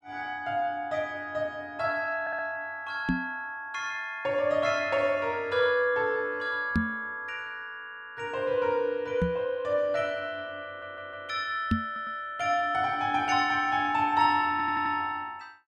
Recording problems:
audio stuttering; 4 times, first at 2 s
knock on the microphone; 4 times, first at 3 s; peak +6 dB vs average level

